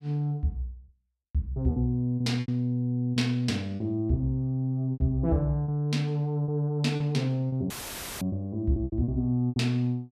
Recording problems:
lost packets; 8% of the sound replaced, filled with repeated pitch periods
audio cutting out; at 7.5 s for 0.5 s; filled with static

